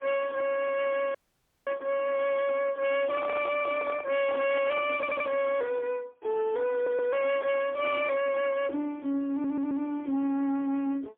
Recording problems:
telephone audio; 240 Hz to 3.3 kHz, AMR-NB, then MP3
distortion; soft clipping, signal-to-distortion ratio 12 dB
audio cutting out; at 1 s for 0.5 s
handling noise; from 3 to 5 s; peak -5 dB vs average level
stutter; at 5 s, at 6.5 s and at 9.5 s

